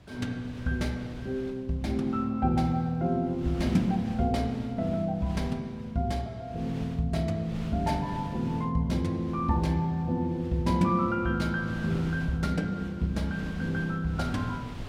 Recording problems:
wind noise; below 450 Hz, SNR 15 dB

